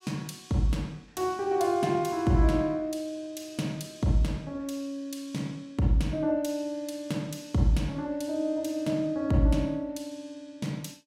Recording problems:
none

